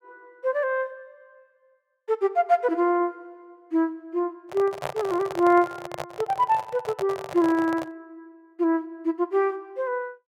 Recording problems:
handling noise; from 4.5 to 8 s; peak -1 dB vs average level

